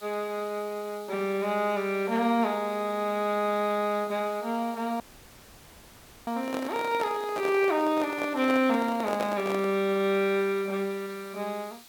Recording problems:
background hiss; SNR 21 dB
audio cutting out; at 5 s for 1.5 s
handling noise; from 6.5 to 10 s; peak -1 dB vs average level

